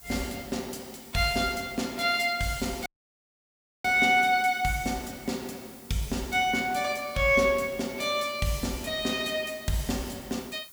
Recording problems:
hiss; SNR 20 dB
dropout; at 3 s for 1 s

